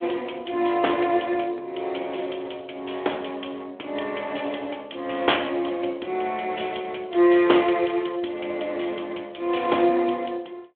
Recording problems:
telephone audio; 300 Hz to 3.5 kHz, Speex

